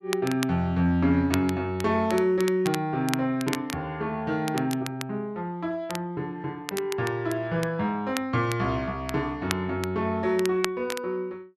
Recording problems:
crackling; vinyl, SNR 11 dB

